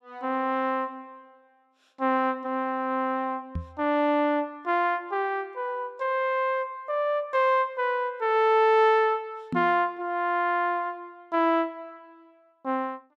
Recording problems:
knock on the microphone; at 3.5 s and at 9.5 s; peak -1 dB vs average level

